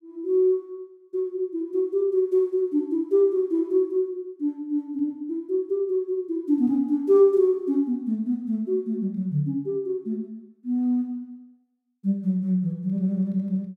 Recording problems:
none

